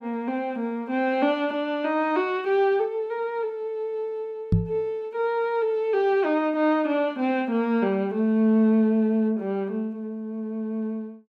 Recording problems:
microphone thump; at 4.5 s; peak +7 dB vs average level

